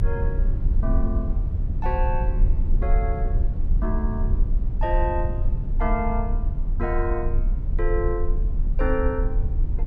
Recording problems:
low-frequency rumble; below 58 Hz, strongest tone 30 Hz, SNR -4 dB

